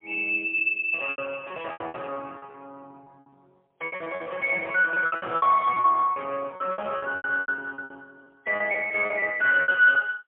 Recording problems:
phone line; 390 Hz to 2.9 kHz, AMR-NB, then MP3
lost packets; 17% of the sound replaced, filled with repeated pitch periods

